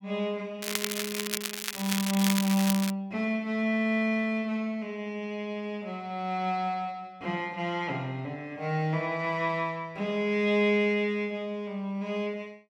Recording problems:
crackling; from 0.5 to 3 s; loose cable, SNR 2 dB

